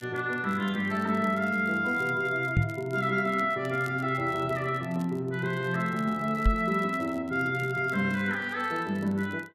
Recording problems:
crackle; vinyl, SNR 27 dB
knock on the microphone; at 2.5 s and at 6.5 s; peak +6 dB vs average level

